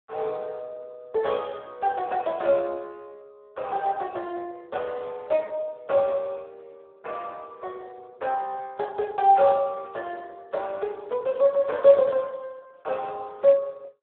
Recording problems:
telephone audio; 340 Hz to 3.7 kHz, Speex

